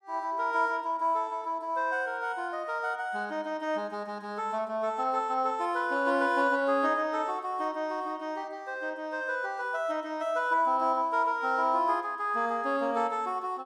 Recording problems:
none

